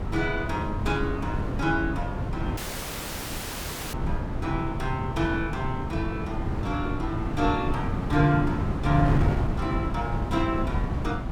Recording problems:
wind on the microphone; below 240 Hz, SNR 1 dB
audio cutting out; at 2.5 s for 1.5 s

